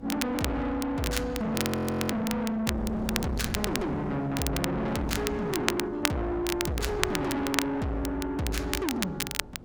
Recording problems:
distorted audio; soft clipping, signal-to-distortion ratio 6 dB
hum; 50 Hz, harmonics up to 350 Hz, SNR 24 dB
wind on the microphone; below 430 Hz, SNR 11 dB
crackle; vinyl, SNR 4 dB
frozen audio; at 1.5 s for 0.5 s

